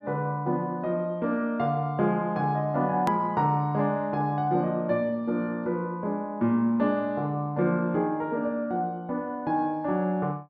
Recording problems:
click at an edit; at 3 s

